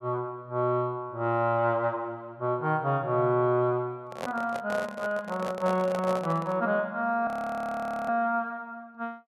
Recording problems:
handling noise; from 4 to 6.5 s; peak -2 dB vs average level
audio freezing; at 7.5 s for 1 s

